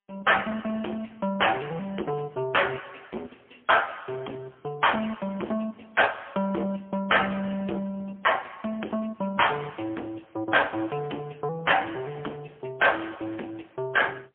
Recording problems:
telephone audio; 240 Hz to 3.3 kHz, AMR-NB, then MP3
distortion; hard clipping, uneven, signal-to-distortion ratio 10 dB

